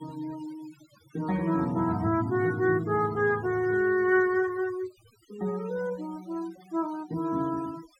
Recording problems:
denoising artefacts; signal-to-artefact ratio 21 dB

